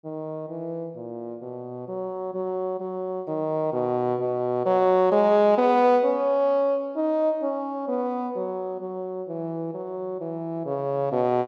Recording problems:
none

